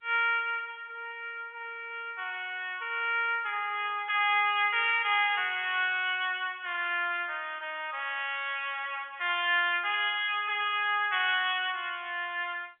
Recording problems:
phone line; 300 Hz to 3.6 kHz, G.711

